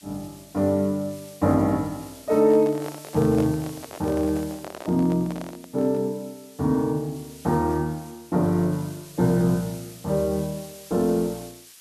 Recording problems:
hiss; slope +5 dB per octave, SNR 21 dB
handling noise; from 2.5 to 6 s; peak -6 dB vs average level

